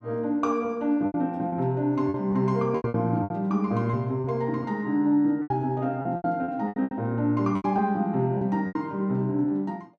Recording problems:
packet loss; 11% of the sound replaced, filled with repeated pitch periods

